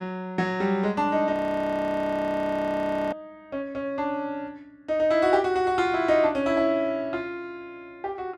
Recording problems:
audio freezing; at 1.5 s for 2 s

